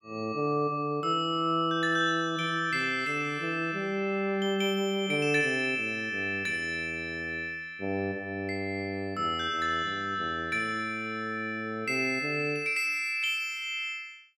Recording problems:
none

